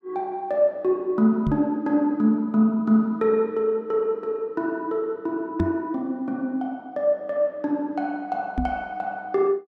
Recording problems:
knock on the microphone; at 1.5 s, at 5.5 s and at 8.5 s; peak +2 dB vs average level

